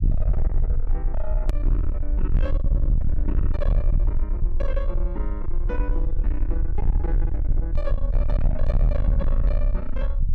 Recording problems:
distorted audio; soft clipping, signal-to-distortion ratio 6 dB
low-frequency rumble; below 52 Hz, SNR -9 dB
hard cut with a click; at 1.5 s

